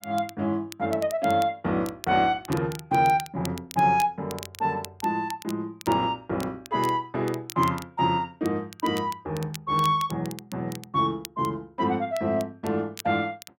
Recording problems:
crackling; vinyl, SNR 17 dB

